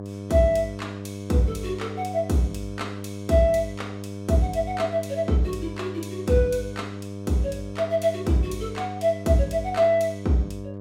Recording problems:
mains hum; 50 Hz, harmonics up to 1.1 kHz, SNR 11 dB

